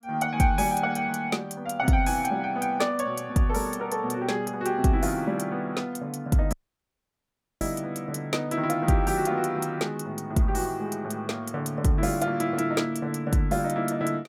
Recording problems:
audio cutting out; at 6.5 s for 1 s

